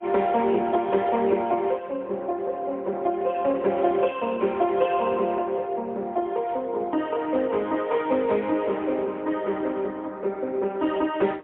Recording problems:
telephone audio; 240 Hz to 3.4 kHz, AMR-NB, then MP3

